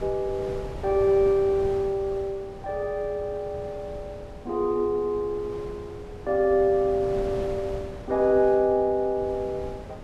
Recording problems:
wind on the microphone; below 480 Hz, SNR 14 dB

